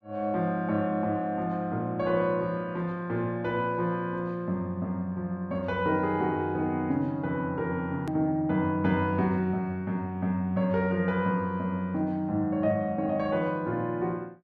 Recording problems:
click at an edit; at 8 s

